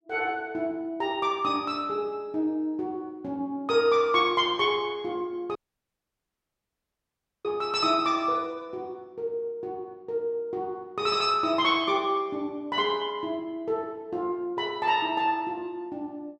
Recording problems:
audio cutting out; at 5.5 s for 2 s

